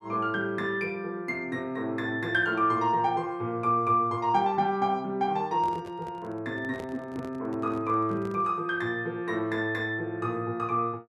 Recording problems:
microphone handling noise; from 5.5 to 8.5 s; peak -8 dB vs average level

